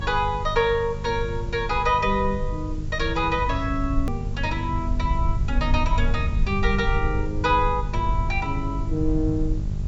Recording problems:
low-pass filter; nothing above 8 kHz
electrical hum; 50 Hz, harmonics up to 650 Hz, SNR 8 dB
hiss; SNR 27 dB
rumble; below 72 Hz, SNR 5 dB
hard cut with a click; at 4 s

